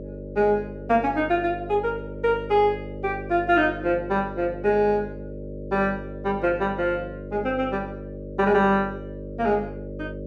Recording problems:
hum; 50 Hz, harmonics up to 600 Hz, SNR 12 dB

